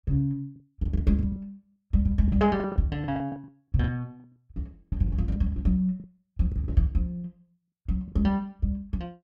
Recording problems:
lost packets; 12% of the sound replaced, filled with the last packet

